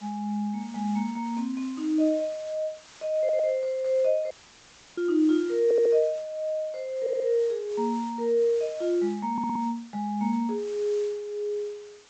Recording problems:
low-pass filter; nothing above 8 kHz
hiss; slope 0 dB per octave, SNR 23 dB
stutter; 4 times, first at 3 s
audio cutting out; at 4.5 s for 0.5 s

